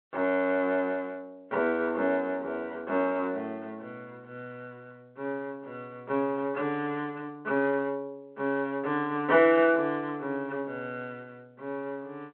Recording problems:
telephone audio; 300 Hz to 3.6 kHz, G.726

